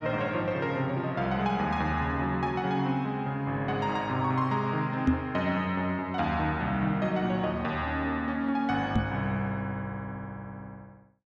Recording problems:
knock on the microphone; at 5 s and at 9 s; peak +7 dB vs average level

